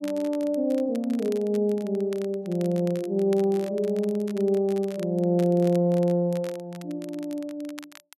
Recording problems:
crackling; vinyl, SNR 23 dB

